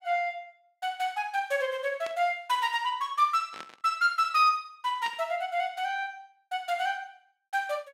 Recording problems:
burst of static; at 2 s, at 3.5 s and at 5 s; peak -9 dB vs average level

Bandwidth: 16 kHz